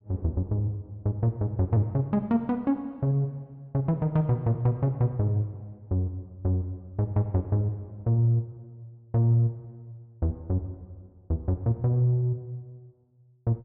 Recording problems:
none

